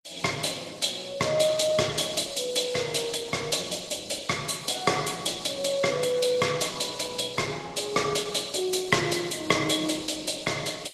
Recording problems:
lossy codec; Opus, then Vorbis, log-spectral distance 6 dB, nothing above 12.7 kHz

